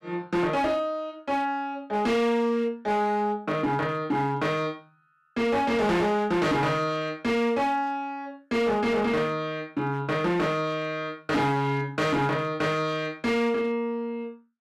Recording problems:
distorted audio; hard clipping, signal-to-distortion ratio 10 dB

